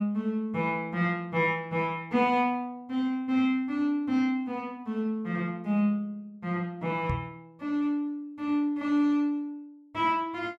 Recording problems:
microphone thump; at 7 s; peak +1 dB vs average level

